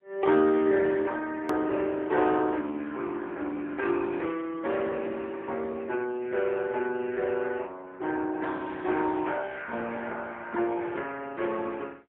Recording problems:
telephone audio; 260 Hz to 3.5 kHz, AMR-NB, then MP3
hard cut with a click; at 1.5 s

